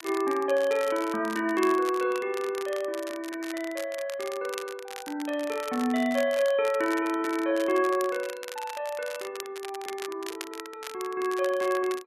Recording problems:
lossy compression; MP2, log-spectral distance 2 dB
crackling; vinyl, SNR 14 dB

